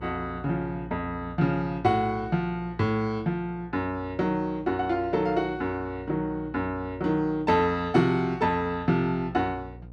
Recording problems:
hum; 60 Hz, harmonics up to 720 Hz, SNR 18 dB

